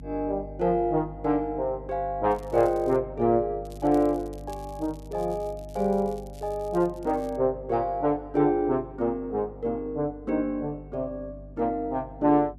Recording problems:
mains hum; 50 Hz, harmonics up to 300 Hz, SNR 17 dB
crackling; at 2.5 s and from 3.5 to 7.5 s; loose cable, SNR 27 dB

